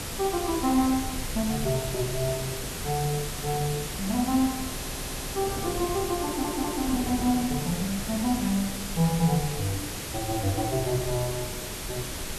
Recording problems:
hiss; slope -1 dB per octave, SNR 6 dB
rumble; below 92 Hz, SNR 16 dB
wind on the microphone; below 390 Hz, SNR 11 dB
audio stuttering; at 4.5 s and at 6.5 s

